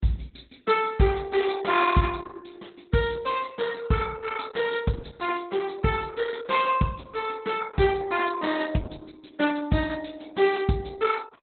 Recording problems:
lossy compression; Opus, log-spectral distance 6 dB, nothing above 4 kHz

